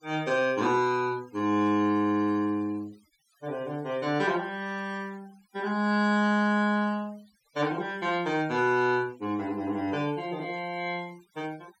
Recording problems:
denoising artefacts; signal-to-artefact ratio 25 dB

